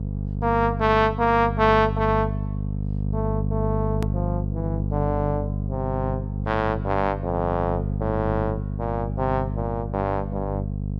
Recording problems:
electrical hum; 50 Hz, harmonics up to 500 Hz, SNR 3 dB
click at an edit; at 4 s

